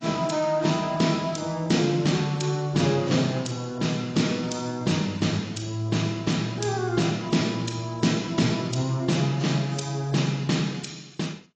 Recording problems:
lossy codec; AAC, log-spectral distance 5 dB, nothing above 7.6 kHz

